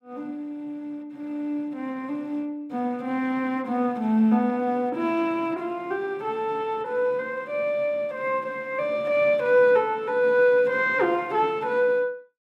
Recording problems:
none

